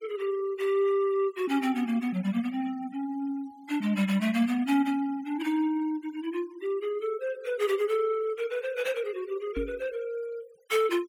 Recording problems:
noise reduction artefacts; signal-to-artefact ratio 23 dB
microphone bump; at 9.5 s; peak -2 dB vs average level

